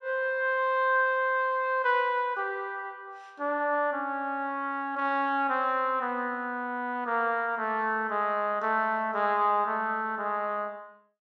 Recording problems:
none

